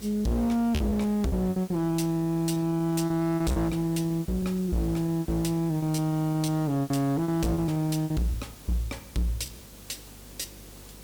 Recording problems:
distortion; hard clipping, signal-to-distortion ratio 8 dB
hum; 50 Hz, harmonics up to 550 Hz, SNR 25 dB
hiss; slope -3 dB per octave, SNR 19 dB
packet loss; 13% of the sound replaced, filled with repeated pitch periods

